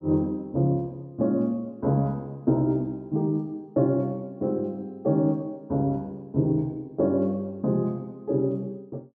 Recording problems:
none

